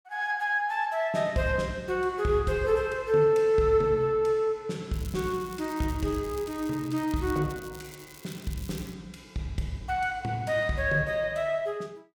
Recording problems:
crackling; from 5 to 9 s; loose cable, SNR 20 dB

